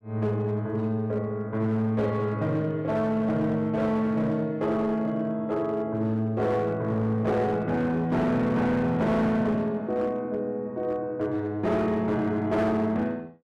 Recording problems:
distorted audio; hard clipping, signal-to-distortion ratio 12 dB

